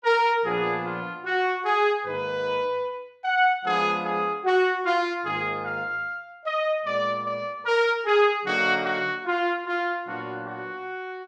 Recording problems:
none

